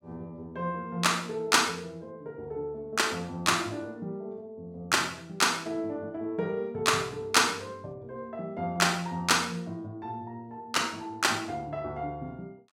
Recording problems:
none

